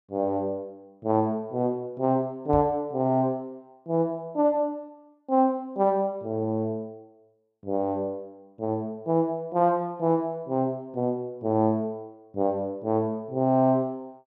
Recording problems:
knock on the microphone; at 2.5 s; peak -3 dB vs average level

